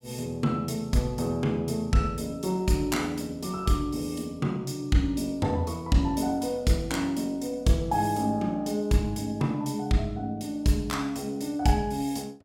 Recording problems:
none

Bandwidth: 17.5 kHz